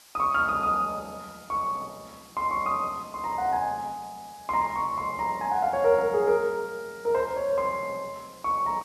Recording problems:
hiss; slope +1 dB per octave, SNR 24 dB

